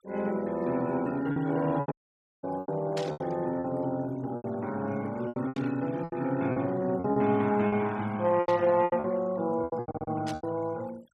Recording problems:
noise reduction artefacts; signal-to-artefact ratio 23 dB
lost packets; 11% of the sound replaced, filled with repeated pitch periods
dropout; at 2 s for 0.5 s
burst of static; 4 times, first at 3 s; peak -5 dB vs average level
stutter; at 10 s

